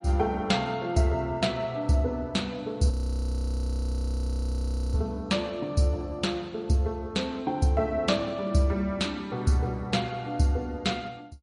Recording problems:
lossy codec; MP3, log-spectral distance 2 dB, nothing above 16.5 kHz
frozen audio; at 3 s for 2 s

